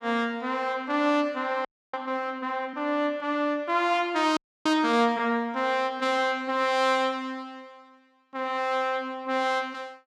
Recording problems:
audio freezing; at 1.5 s and at 4.5 s

